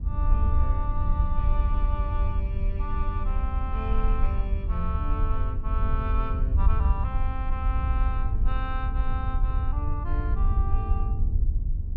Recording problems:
wind noise; below 68 Hz, SNR -8 dB

